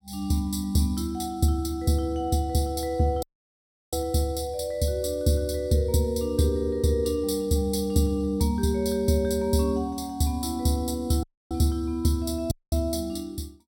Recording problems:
dropout; at 3 s for 0.5 s, at 11 s and at 13 s

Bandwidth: 17 kHz